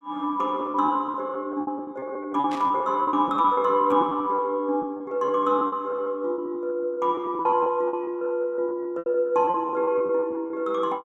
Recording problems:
packet loss; 17% of the sound replaced, filled with repeated pitch periods
burst of static; at 2.5 s; peak -11 dB vs average level

